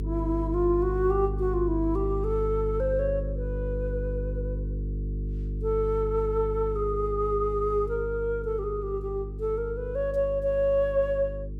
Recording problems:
electrical hum; 50 Hz, harmonics up to 450 Hz, SNR 6 dB

